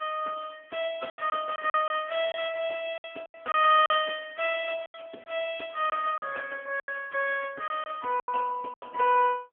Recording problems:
phone line; 410 Hz to 3.4 kHz, AMR-NB
packet loss; 9% of the sound replaced, filled with silence

